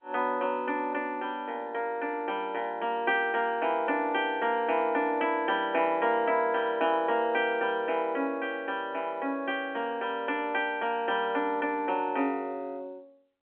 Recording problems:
telephone audio; 220 Hz to 3.3 kHz, G.711

